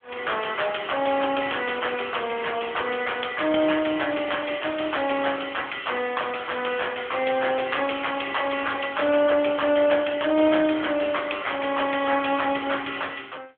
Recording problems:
telephone audio; 260 Hz to 3.4 kHz, AMR-NB

